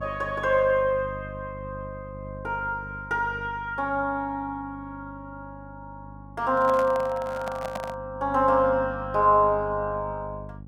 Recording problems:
electrical hum; 50 Hz, harmonics up to 550 Hz, SNR 16 dB
handling noise; from 6.5 to 8 s; peak -4 dB vs average level

